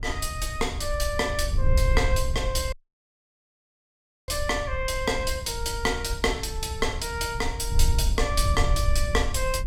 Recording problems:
wind noise; below 72 Hz, SNR 2 dB
dropout; at 2.5 s for 1.5 s

